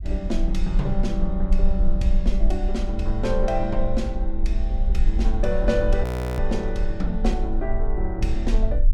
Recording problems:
low-frequency rumble; below 44 Hz, strongest tone 20 Hz, SNR -1 dB
audio freezing; at 6 s

